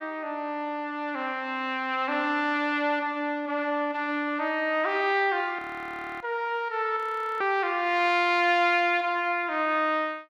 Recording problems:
frozen audio; at 5.5 s for 0.5 s and at 7 s

